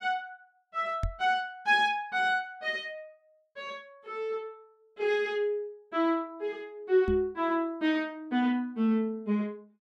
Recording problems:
microphone bump; at 1 s and at 7 s; peak 0 dB vs average level

